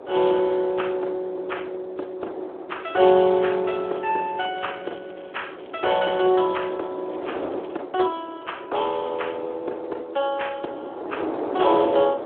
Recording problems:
phone line; 280 Hz to 3.5 kHz, Speex
wind noise; below 690 Hz, SNR 11 dB
crackle; from 3.5 to 6.5 s and at 7 s; loose cable, SNR 27 dB

